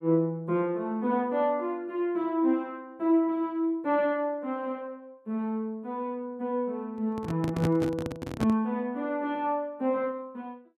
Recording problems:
microphone handling noise; from 7 to 8.5 s; peak +3 dB vs average level

